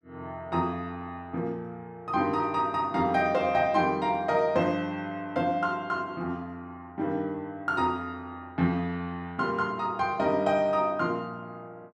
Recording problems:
none

